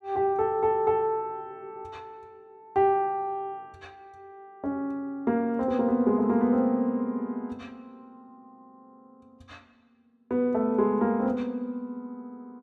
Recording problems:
none

